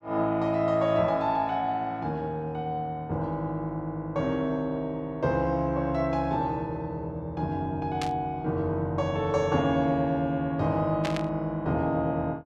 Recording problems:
burst of static; at 8 s and at 11 s; peak -2 dB vs average level

